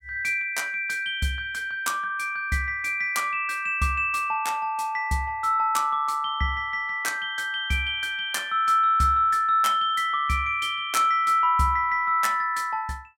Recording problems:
none

